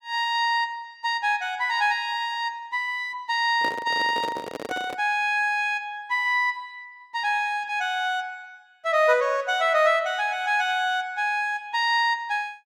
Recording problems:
microphone handling noise; from 3.5 to 5 s; peak -5 dB vs average level

